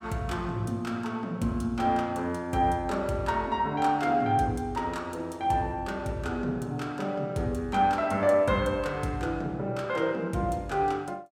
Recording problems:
none

